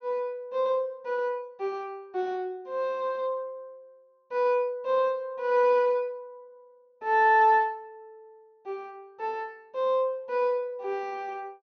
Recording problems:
treble cut off; nothing above 6.5 kHz

